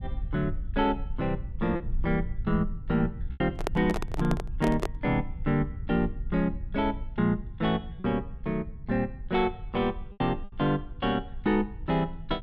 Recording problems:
low-frequency rumble; below 68 Hz, SNR 10 dB
packet loss; 2% of the sound replaced, filled with repeated pitch periods
handling noise; from 3.5 to 5 s; peak +3 dB vs average level

